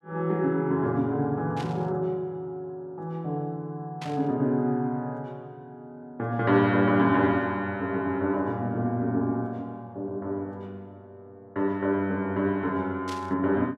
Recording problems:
static burst; at 1.5 s, at 4 s and at 13 s; peak -9 dB vs average level

